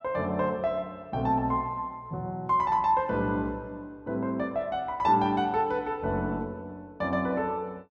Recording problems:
none

